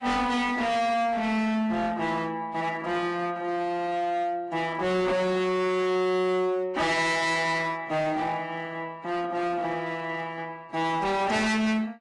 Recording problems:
lossy compression; AAC, log-spectral distance 2 dB, nothing above 10.4 kHz
distorted audio; hard clipping, signal-to-distortion ratio 6 dB

